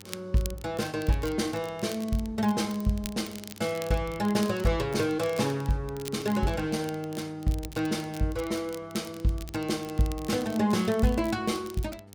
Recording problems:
electrical hum; 50 Hz, harmonics up to 1.7 kHz, SNR 23 dB
crackle; vinyl, SNR 17 dB

